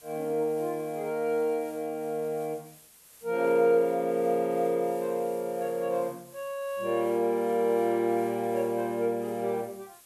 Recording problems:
hiss; slope 0 dB per octave, SNR 24 dB

